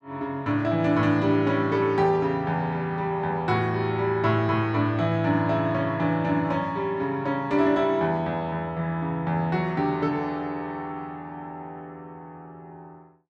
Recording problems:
none

